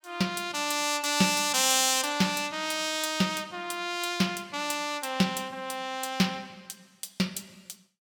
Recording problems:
none

